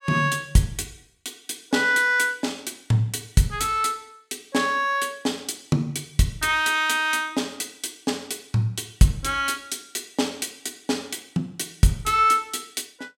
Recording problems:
none

